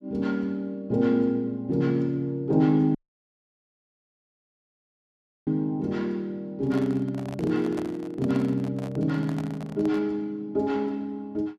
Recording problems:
dropout; at 3 s for 2.5 s
handling noise; from 6.5 to 10 s; peak -8 dB vs average level

